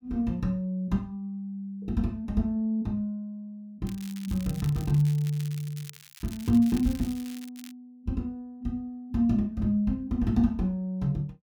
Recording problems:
crackling; from 4 to 5 s and from 5 to 7.5 s; loose cable, SNR 18 dB

